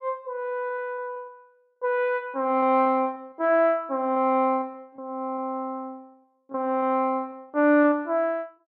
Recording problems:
lost packets; 5% of the sound replaced, filled with repeated pitch periods

